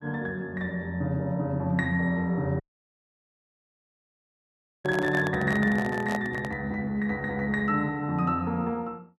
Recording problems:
audio cutting out; at 2.5 s for 2 s
handling noise; from 5 to 6.5 s; peak -1 dB vs average level

